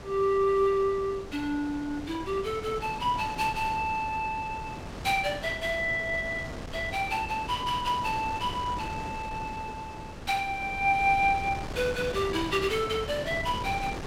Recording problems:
wind on the microphone; below 900 Hz, SNR 11 dB

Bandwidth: 16 kHz